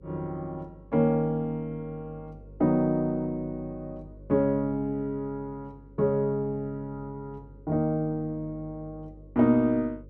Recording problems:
hum; 50 Hz, harmonics up to 550 Hz, SNR 21 dB

